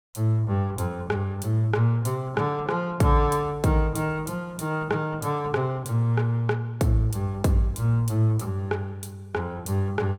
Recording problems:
none

